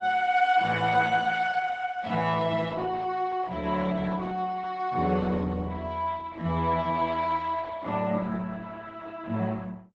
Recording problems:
lossy compression; MP3, then Opus, log-spectral distance 3 dB

